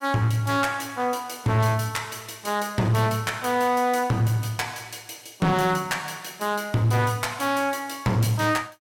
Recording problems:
distortion; hard clipping, uneven, signal-to-distortion ratio 11 dB

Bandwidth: 17 kHz